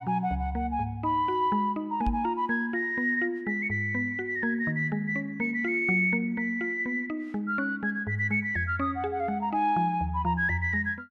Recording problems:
microphone thump; at 2 s; peak -1 dB vs average level

